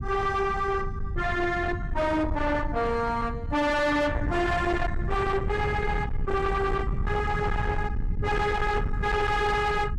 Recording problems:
distortion; soft clipping, signal-to-distortion ratio 7 dB
rumble; below 170 Hz, SNR 5 dB

